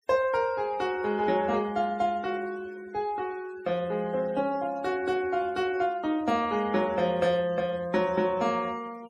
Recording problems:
noise reduction artefacts; signal-to-artefact ratio 23 dB

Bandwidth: 12.5 kHz